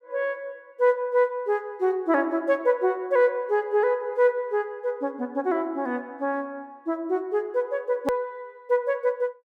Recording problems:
edit click; at 8 s

